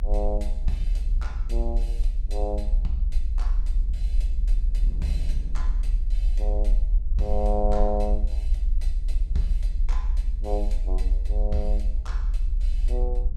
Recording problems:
rumble; below 46 Hz, strongest tone 36 Hz, SNR -6 dB
wind on the microphone; below 130 Hz, SNR 12 dB

